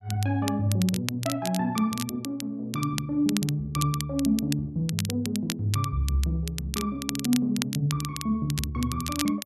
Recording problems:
crackle; vinyl, SNR 8 dB

